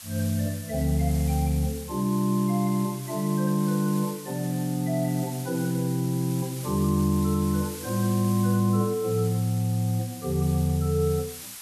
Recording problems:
background hiss; slope +3 dB per octave, SNR 14 dB

